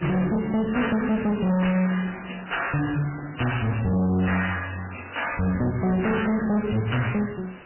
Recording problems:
lossy compression; MP3, log-spectral distance 13 dB, nothing above 3 kHz
distorted audio; soft clipping, signal-to-distortion ratio 5 dB
hiss; SNR 20 dB

